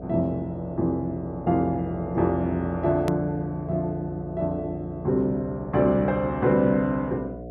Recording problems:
electrical hum; 60 Hz, harmonics up to 720 Hz, SNR 14 dB
hard cut with a click; at 3 s

